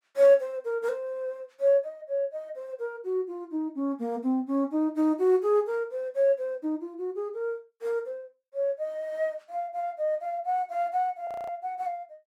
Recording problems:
frozen audio; at 11 s

